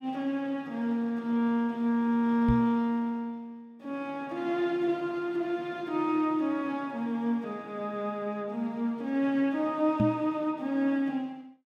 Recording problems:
microphone bump; at 2.5 s and at 10 s; peak +6 dB vs average level

